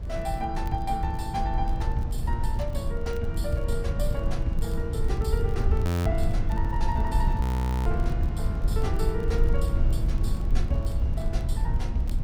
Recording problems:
rumble; below 84 Hz, SNR -4 dB
crackle; vinyl, SNR 25 dB
frozen audio; at 6 s and at 7.5 s

